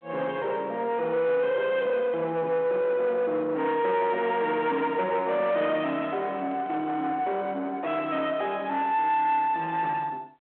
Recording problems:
telephone audio; 280 Hz to 3.5 kHz, G.726
distortion; soft clipping, signal-to-distortion ratio 10 dB
handling noise; from 3.5 to 7 s; peak -11 dB vs average level

